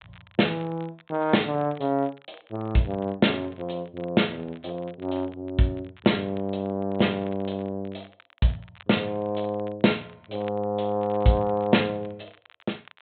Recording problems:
treble cut off; nothing above 4 kHz
crackle; vinyl, SNR 27 dB

